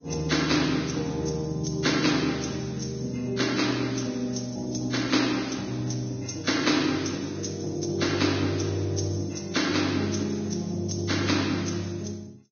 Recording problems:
lossy compression; Vorbis, log-spectral distance 6 dB, nothing above 6.5 kHz

